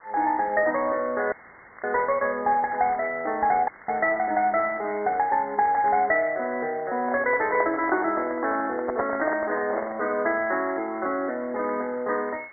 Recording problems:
phone line; 340 Hz to 2.2 kHz, G.726
background hiss; SNR 27 dB
crackling; vinyl, SNR 26 dB
audio cutting out; at 1.5 s for 0.5 s and at 3.5 s; filled with static
microphone handling noise; from 7 to 10 s; peak +2 dB vs average level

